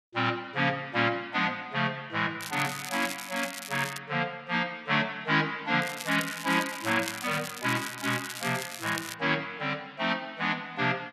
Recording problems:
crackle; from 2.5 to 4 s and from 6 to 9 s; loose cable, SNR 10 dB

